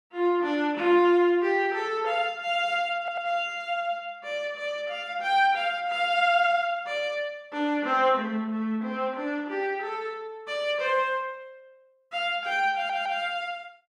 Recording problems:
stutter; at 3 s and at 13 s

